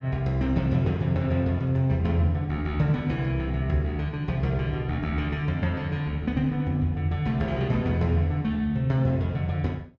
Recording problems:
none

